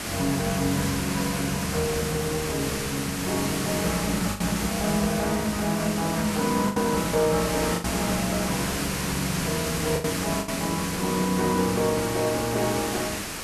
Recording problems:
hiss; slope -2 dB per octave, SNR 3 dB
packet loss; 3% of the sound replaced, filled with the last packet

